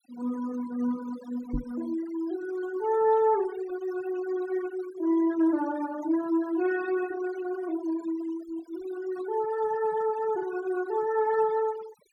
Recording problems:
noise reduction artefacts; signal-to-artefact ratio 17 dB
microphone thump; at 1.5 s; peak 0 dB vs average level

